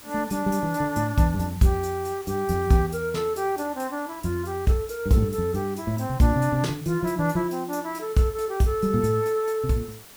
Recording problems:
hiss; slope -2 dB per octave, SNR 19 dB

